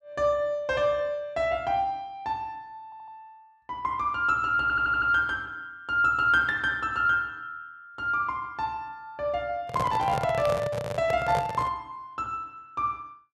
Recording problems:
stutter; at 3 s and at 4.5 s
microphone handling noise; from 9.5 to 12 s; peak -1 dB vs average level

